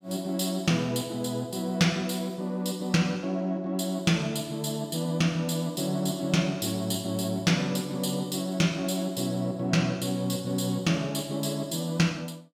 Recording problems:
none

